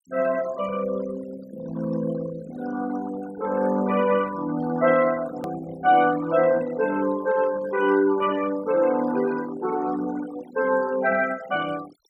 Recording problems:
noise reduction artefacts; signal-to-artefact ratio 17 dB
hard cut with a click; at 5.5 s

